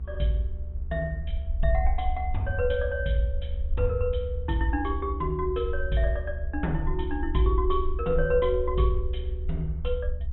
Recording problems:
treble missing; nothing above 3.8 kHz
hum; 60 Hz, harmonics up to 660 Hz, SNR 20 dB
rumble; below 72 Hz, SNR 4 dB

